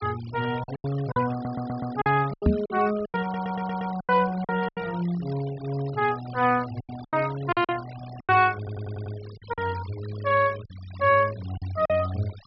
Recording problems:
treble cut off; nothing above 5.5 kHz
noise reduction artefacts; signal-to-artefact ratio 18 dB
lost packets; 10% of the sound replaced, filled with silence
audio stuttering; at 1.5 s, at 3 s and at 8.5 s
microphone bump; at 2.5 s; peak +8 dB vs average level

